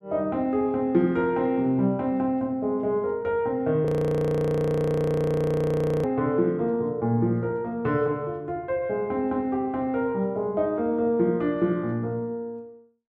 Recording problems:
audio freezing; at 4 s for 2 s

